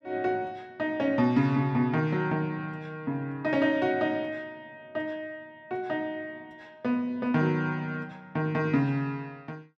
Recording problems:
none

